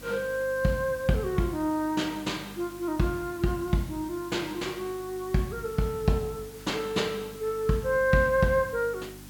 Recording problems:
electrical hum; 50 Hz, harmonics up to 300 Hz, SNR 21 dB
background hiss; slope -1 dB per octave, SNR 19 dB

